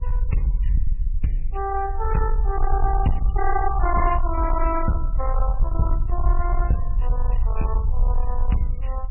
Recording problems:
codec artefacts; MP3, log-spectral distance 2 dB, nothing above 2.9 kHz
distorted audio; soft clipping, signal-to-distortion ratio 11 dB
low-frequency rumble; below 54 Hz, SNR -1 dB

